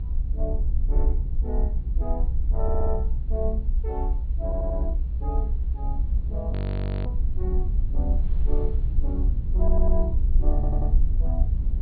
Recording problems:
treble cut off; nothing above 4.5 kHz
rumble; below 62 Hz, SNR -9 dB
wind on the microphone; below 480 Hz, SNR 21 dB
stutter; 4 times, first at 2.5 s
audio freezing; at 6.5 s for 0.5 s

